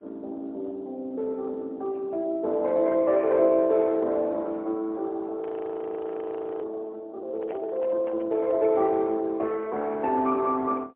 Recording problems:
telephone audio; 220 Hz to 3.6 kHz, AMR-NB, then MP3
frozen audio; at 5.5 s for 1 s
handling noise; from 7.5 to 8.5 s; peak -9 dB vs average level

